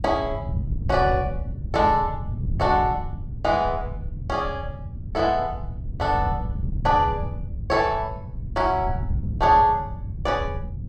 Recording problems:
wind noise; below 130 Hz, SNR 7 dB

